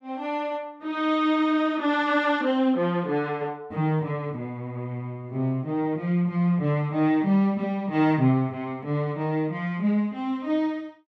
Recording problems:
none

